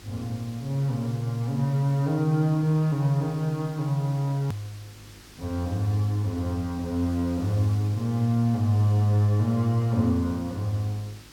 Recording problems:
hum; 50 Hz, harmonics up to 350 Hz, SNR 29 dB
background hiss; slope -1 dB per octave, SNR 23 dB
edit click; at 4.5 s

